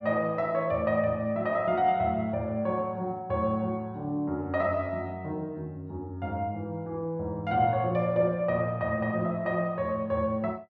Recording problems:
none

